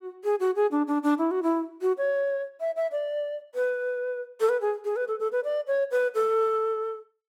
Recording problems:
none

